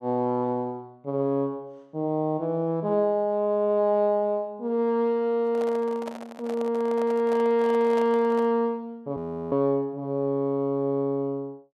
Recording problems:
microphone handling noise; from 5.5 to 8.5 s; peak -8 dB vs average level
frozen audio; at 9 s

